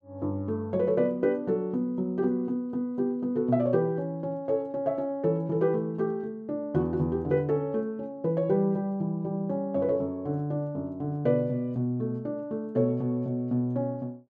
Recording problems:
none

